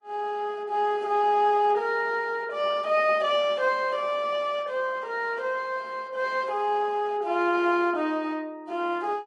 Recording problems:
lossy compression; Vorbis, log-spectral distance 2 dB

